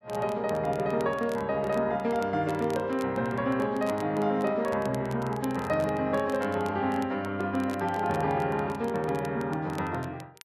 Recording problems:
crackle; vinyl, SNR 22 dB

